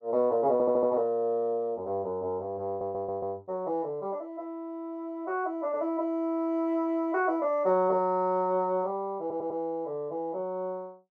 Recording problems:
audio stuttering; at 0.5 s, at 2.5 s and at 9 s

